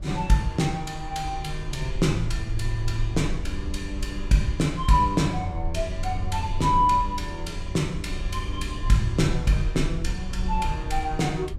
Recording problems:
rumble; below 66 Hz, SNR 8 dB

